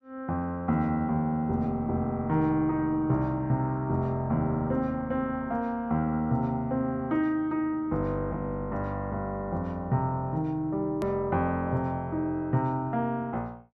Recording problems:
hard cut with a click; at 11 s

